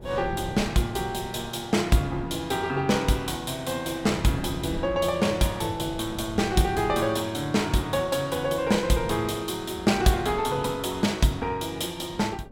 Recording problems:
wind noise; below 290 Hz, SNR 15 dB

